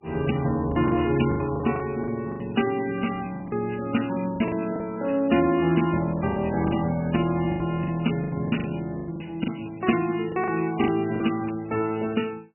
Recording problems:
lossy codec; MP3, log-spectral distance 6 dB, nothing above 2.9 kHz
packet loss; 10% of the sound replaced, filled with the last packet

